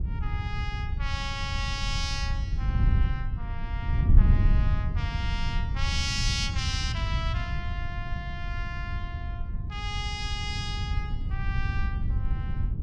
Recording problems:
wind on the microphone; below 96 Hz, SNR -5 dB

